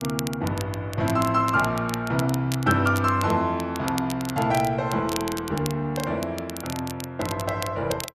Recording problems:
crackling; vinyl, SNR 13 dB

